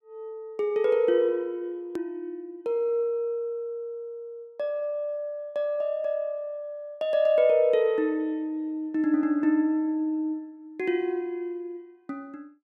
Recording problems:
hard cut with a click; at 2 s

